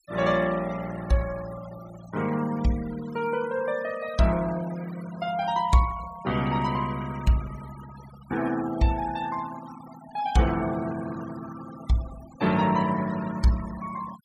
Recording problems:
denoising artefacts; signal-to-artefact ratio 16 dB

